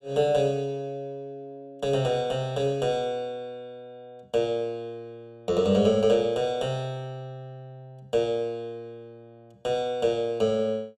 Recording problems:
none

